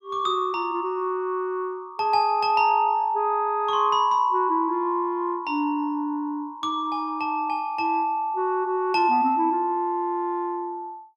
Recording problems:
none

